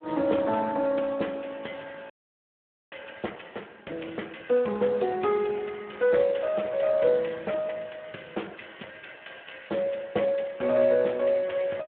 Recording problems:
telephone audio; 240 Hz to 3.4 kHz, Speex
audio freezing; at 2 s for 1 s

